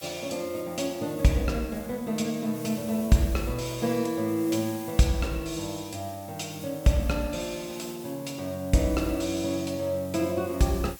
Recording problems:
hiss; slope +1 dB per octave, SNR 17 dB

